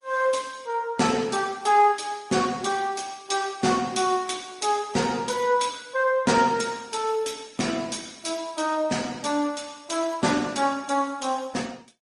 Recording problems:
lossy codec; MP3, then Opus, log-spectral distance 5 dB, nothing above 10.4 kHz

